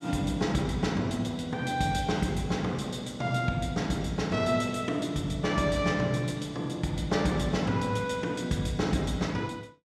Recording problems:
none

